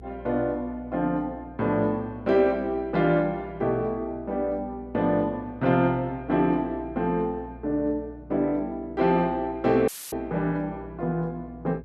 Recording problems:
hum; 60 Hz, harmonics up to 480 Hz, SNR 20 dB
audio cutting out; at 10 s; filled with static

